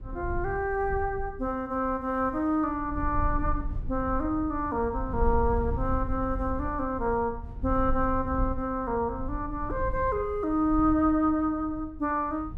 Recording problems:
low-frequency rumble; below 74 Hz, SNR 8 dB

